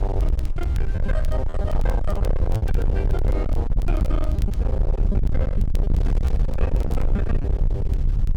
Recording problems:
distortion; hard clipping, signal-to-distortion ratio 6 dB
rumble; below 74 Hz, SNR -8 dB
wind noise; below 380 Hz, SNR 9 dB
crackling; vinyl, SNR 19 dB
lost packets; 7% of the sound replaced, filled with repeated pitch periods

